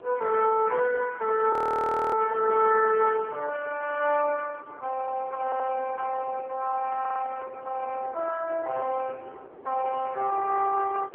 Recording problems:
phone line; 340 Hz to 2.9 kHz, AMR-NB
wind on the microphone; below 590 Hz, SNR 19 dB
frozen audio; at 1.5 s for 0.5 s
audio stuttering; at 5.5 s and at 7 s

